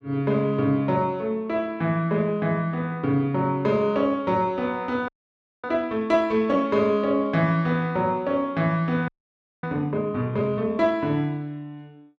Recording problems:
audio freezing; at 5 s for 0.5 s and at 9 s for 0.5 s

